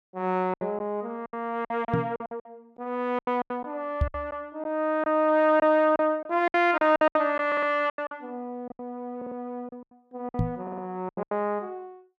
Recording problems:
lost packets; 13% of the sound replaced, filled with silence
microphone bump; at 2 s, at 4 s and at 10 s; peak +5 dB vs average level
stutter; at 7.5 s, at 9 s and at 11 s

